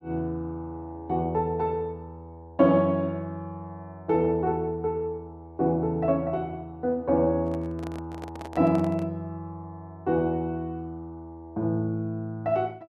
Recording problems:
microphone handling noise; from 7.5 to 9 s; peak -9 dB vs average level

